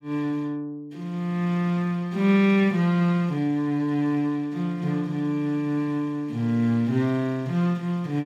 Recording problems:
none

